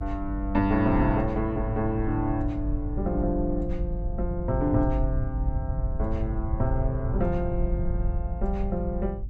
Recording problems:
rumble; below 80 Hz, SNR 3 dB

